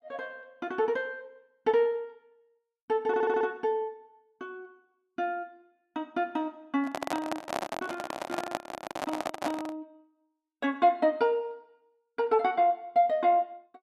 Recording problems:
stutter; at 3 s
handling noise; from 7 to 10 s; peak +2 dB vs average level

